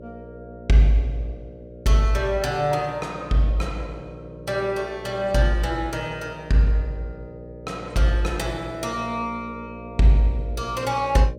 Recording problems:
hum; 60 Hz, harmonics up to 600 Hz, SNR 16 dB

